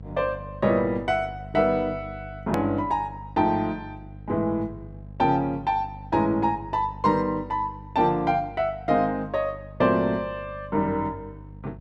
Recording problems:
hum; 50 Hz, harmonics up to 550 Hz, SNR 17 dB
edit click; at 2.5 s

